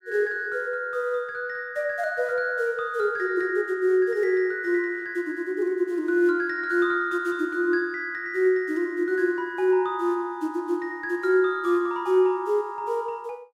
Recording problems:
none

